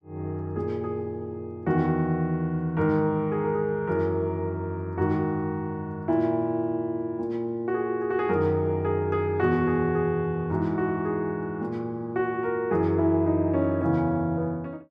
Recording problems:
none

